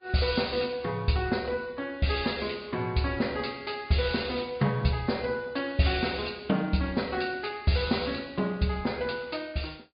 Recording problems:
treble cut off; nothing above 4.8 kHz
lossy compression; Vorbis, log-spectral distance 4 dB

